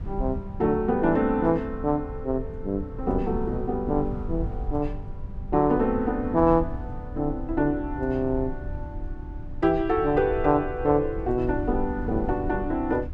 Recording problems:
rumble; below 86 Hz, SNR 11 dB

